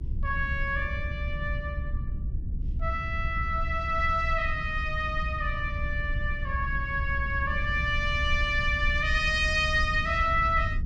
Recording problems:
low-frequency rumble; below 78 Hz, SNR 5 dB

